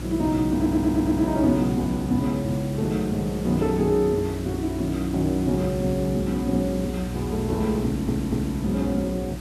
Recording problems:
hum; 60 Hz, harmonics up to 360 Hz, SNR 10 dB
background hiss; slope -2 dB per octave, SNR 18 dB
audio stuttering; at 0.5 s and at 8 s

